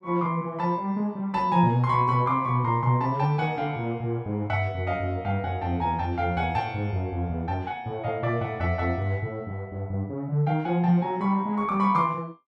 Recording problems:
none

